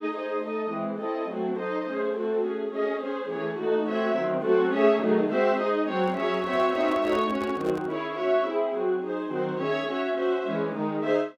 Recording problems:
microphone handling noise; from 6 to 8 s; peak -6 dB vs average level

